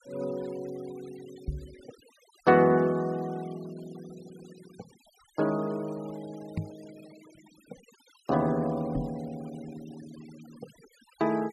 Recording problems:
denoising artefacts; signal-to-artefact ratio 24 dB
knock on the microphone; at 1.5 s, at 6.5 s and at 9 s; peak +1 dB vs average level

